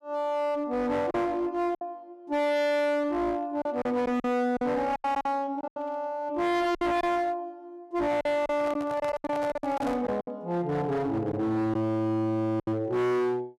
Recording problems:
distortion; hard clipping, uneven, signal-to-distortion ratio 7 dB
lost packets; 8% of the sound replaced, filled with silence
handling noise; from 8.5 to 10 s; peak -5 dB vs average level

